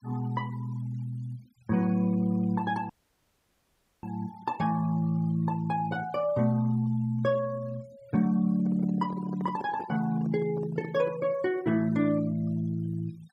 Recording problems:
denoising artefacts; signal-to-artefact ratio 24 dB
dropout; at 3 s for 1 s
microphone handling noise; from 8.5 to 11 s; peak -7 dB vs average level

